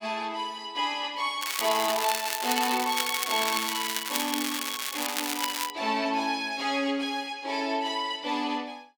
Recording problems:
crackle; from 1.5 to 5.5 s; loose cable, SNR 1 dB

